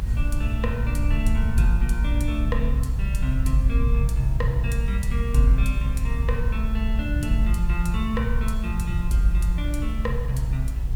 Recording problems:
background hiss; slope -5 dB per octave, SNR 20 dB
low-frequency rumble; below 70 Hz, SNR -2 dB

